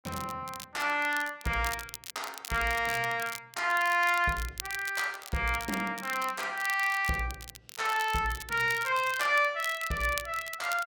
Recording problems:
crackle; vinyl, SNR 13 dB

